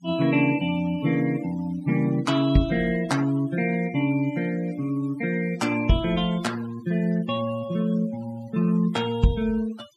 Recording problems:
noise reduction artefacts; signal-to-artefact ratio 20 dB

